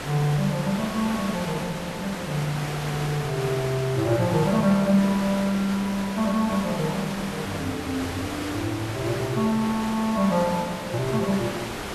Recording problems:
background hiss; slope -4 dB per octave, SNR 7 dB

